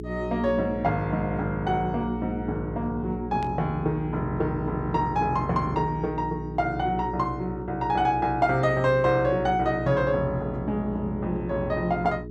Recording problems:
hum; 60 Hz, harmonics up to 420 Hz, SNR 9 dB
static burst; at 3.5 s; peak -13 dB vs average level

